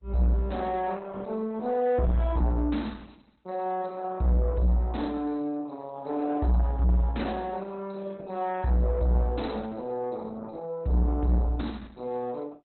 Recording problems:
lossy compression; Opus, log-spectral distance 4 dB, nothing above 4.1 kHz
distorted audio; soft clipping, signal-to-distortion ratio 11 dB

